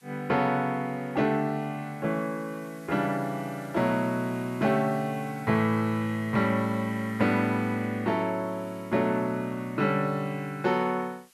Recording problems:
hiss; slope +2 dB per octave, SNR 27 dB

